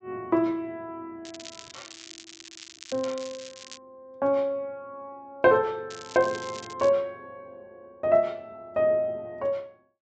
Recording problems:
low-pass filter; nothing above 8 kHz
crackle; from 1.5 to 4 s and at 6 s; loose cable, SNR 17 dB

